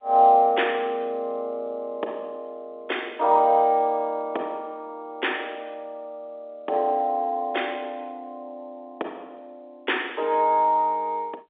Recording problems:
phone line; 320 Hz to 3.6 kHz, G.711

